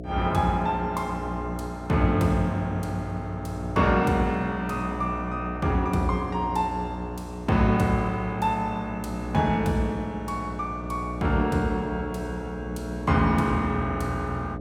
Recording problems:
hum; 60 Hz, harmonics up to 720 Hz, SNR 9 dB

